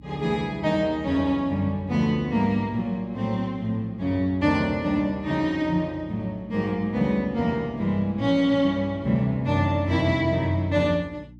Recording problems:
electrical hum; 60 Hz, harmonics up to 300 Hz, SNR 22 dB

